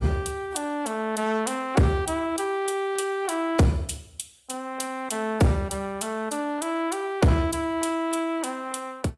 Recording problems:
codec artefacts; AAC, log-spectral distance 3 dB, nothing above 11.3 kHz
distortion; hard clipping, signal-to-distortion ratio 11 dB

